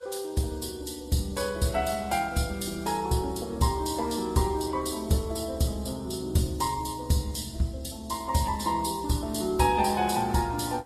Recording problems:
lossy compression; Opus, then Vorbis, log-spectral distance 6 dB, nothing above 13.8 kHz

